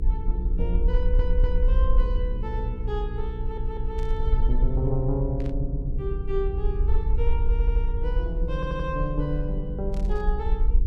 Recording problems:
electrical hum; 60 Hz, harmonics up to 480 Hz, SNR 5 dB
low-frequency rumble; below 48 Hz, SNR -4 dB
stutter; 4 times, first at 1 s
static burst; at 4 s, at 5.5 s and at 10 s; peak -13 dB vs average level

